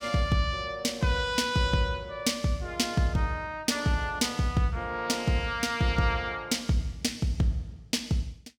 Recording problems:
none

